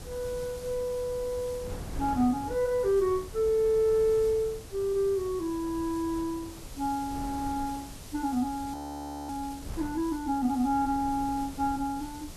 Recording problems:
hiss; slope +2 dB per octave, SNR 19 dB
wind noise; below 250 Hz, SNR 15 dB
frozen audio; at 8.5 s for 0.5 s

